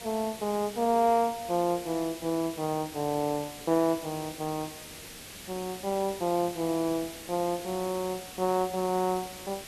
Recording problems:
hiss; SNR 13 dB

